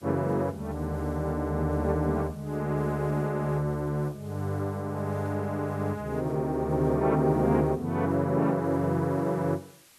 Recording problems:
hiss; slope 0 dB per octave, SNR 28 dB

